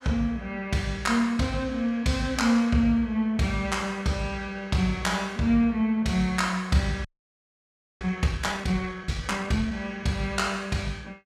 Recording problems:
frozen audio; at 7 s for 1 s

